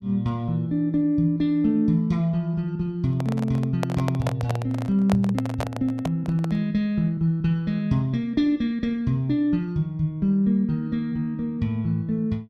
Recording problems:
handling noise; from 3 to 6.5 s; peak 0 dB vs average level

